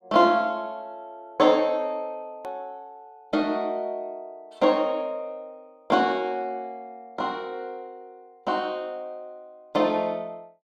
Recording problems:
hard cut with a click; at 2.5 s

